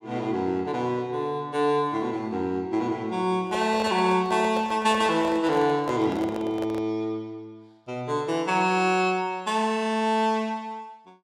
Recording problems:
microphone handling noise; from 3.5 to 7 s; peak -5 dB vs average level

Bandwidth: 16.5 kHz